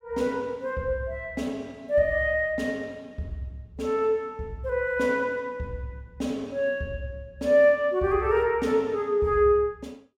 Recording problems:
none

